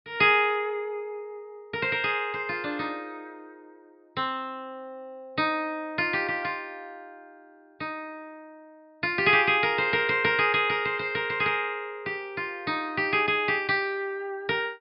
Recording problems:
treble missing; nothing above 5.5 kHz

